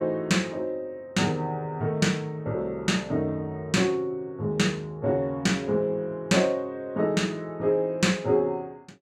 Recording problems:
none

